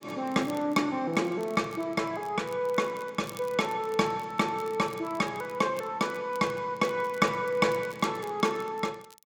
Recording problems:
crackling; vinyl, SNR 23 dB

